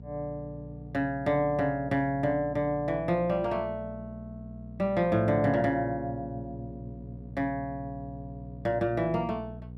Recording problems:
hum; 60 Hz, harmonics up to 480 Hz, SNR 14 dB

